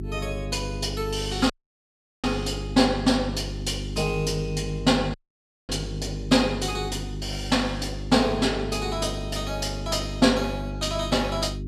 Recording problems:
hum; 50 Hz, harmonics up to 400 Hz, SNR 8 dB
audio cutting out; at 1.5 s for 0.5 s and at 5 s for 0.5 s

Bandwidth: 14 kHz